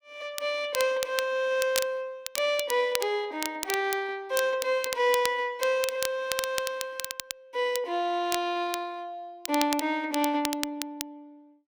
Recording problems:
crackle; vinyl, SNR 7 dB

